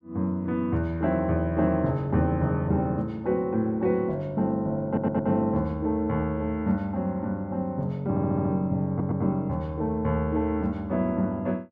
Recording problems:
stutter; at 5 s, at 8 s and at 9 s

